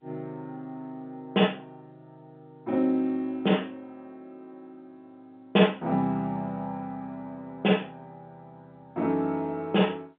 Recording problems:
phone line; 150 Hz to 3.6 kHz, G.711

